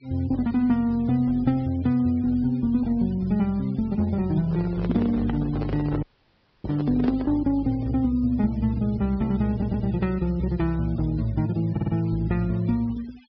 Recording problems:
treble missing; nothing above 5.5 kHz
noise reduction artefacts; signal-to-artefact ratio 25 dB
handling noise; from 4.5 to 7.5 s; peak -4 dB vs average level
dropout; at 6 s for 0.5 s
audio stuttering; at 9.5 s and at 12 s

